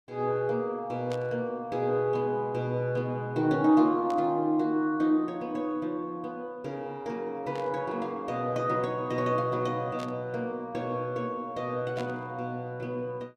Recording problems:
burst of static; 5 times, first at 1 s; peak -10 dB vs average level

